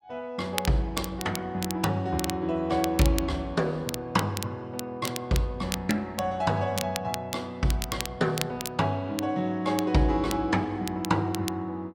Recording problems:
crackling; vinyl, SNR 9 dB

